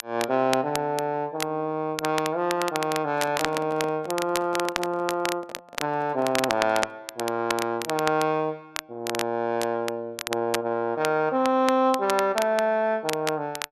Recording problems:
crackling; vinyl, SNR 8 dB
microphone handling noise; from 3 to 7 s; peak -7 dB vs average level

